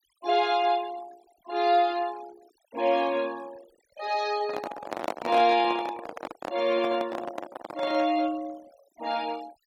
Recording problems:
denoising artefacts; signal-to-artefact ratio 20 dB
microphone handling noise; from 4.5 to 8 s; peak 0 dB vs average level

